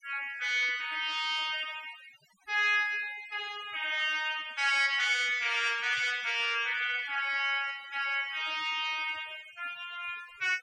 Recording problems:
noise reduction artefacts; signal-to-artefact ratio 20 dB

